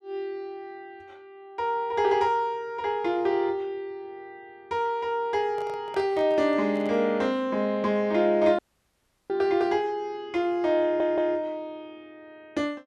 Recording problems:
handling noise; from 5.5 to 7 s; peak -11 dB vs average level
audio cutting out; at 8.5 s for 0.5 s
stutter; at 11 s

